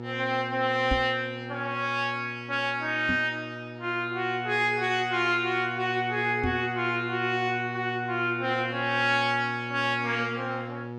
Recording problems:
hum; 60 Hz, harmonics up to 1.4 kHz, SNR 11 dB
knock on the microphone; at 1 s, at 3 s and at 6.5 s; peak +2 dB vs average level

